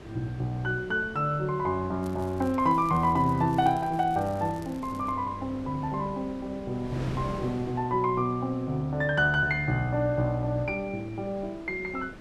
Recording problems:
wind on the microphone; below 620 Hz, SNR 16 dB
crackling; from 2 to 5 s; loose cable, SNR 27 dB

